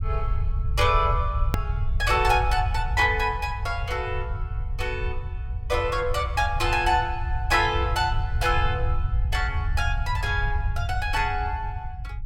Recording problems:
rumble; below 86 Hz, SNR 4 dB
hard cut with a click; at 1.5 s

